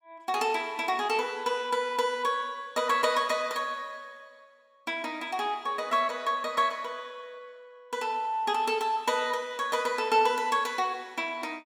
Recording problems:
none

